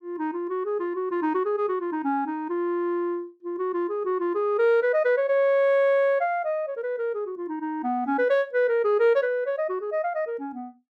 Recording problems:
none

